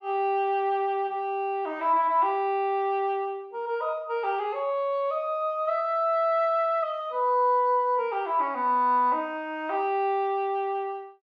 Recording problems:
none

